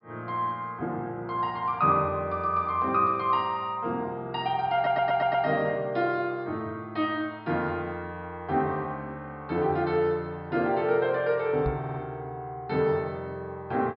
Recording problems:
low-pass filter; nothing above 5.5 kHz
audio stuttering; at 5 s and at 12 s
microphone bump; at 12 s; peak +1 dB vs average level

